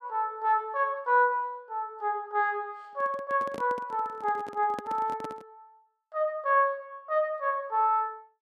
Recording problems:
microphone handling noise; from 3 to 5.5 s; peak -6 dB vs average level

